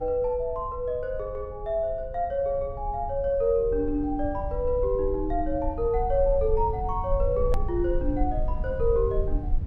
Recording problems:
low-frequency rumble; below 58 Hz, SNR 7 dB
click at an edit; at 7.5 s

